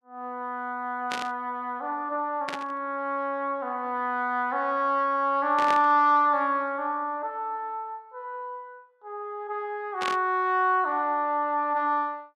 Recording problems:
static burst; 4 times, first at 1 s; peak -2 dB vs average level

